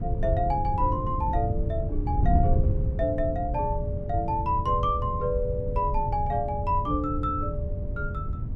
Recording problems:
wind on the microphone; below 120 Hz, SNR 1 dB

